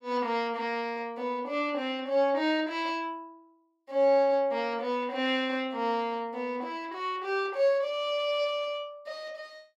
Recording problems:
none

